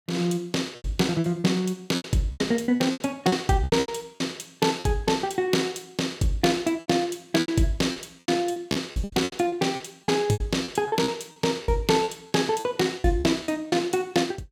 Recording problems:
packet loss; 14% of the sound replaced, filled with repeated pitch periods

